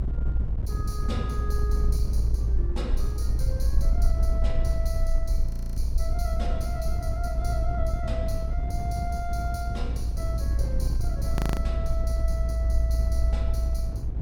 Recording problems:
rumble; below 58 Hz, strongest tone 58 Hz, SNR -9 dB
wind on the microphone; below 130 Hz, SNR -4 dB
frozen audio; at 5.5 s and at 11 s

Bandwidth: 17 kHz